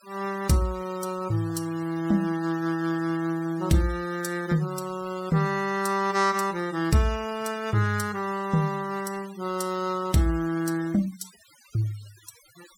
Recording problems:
noise reduction artefacts; signal-to-artefact ratio 20 dB

